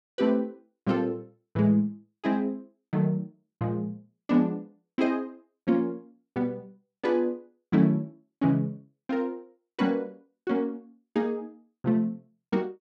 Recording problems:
none

